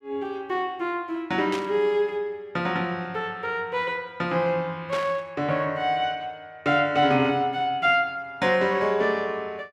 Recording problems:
burst of static; at 1.5 s and at 5 s; peak -5 dB vs average level

